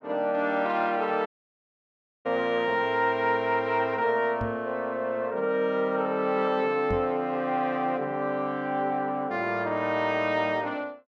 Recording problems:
audio cutting out; at 1.5 s for 1 s
knock on the microphone; at 4.5 s and at 7 s; peak -1 dB vs average level

